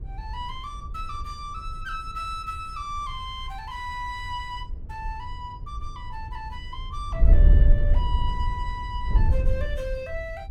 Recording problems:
wind noise; below 66 Hz, SNR -9 dB

